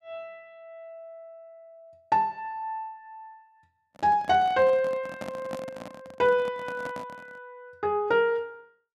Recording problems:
microphone handling noise; from 4 to 7.5 s; peak -6 dB vs average level

